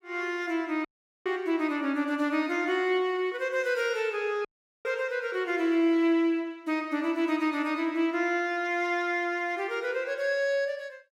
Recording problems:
dropout; at 1 s and at 4.5 s

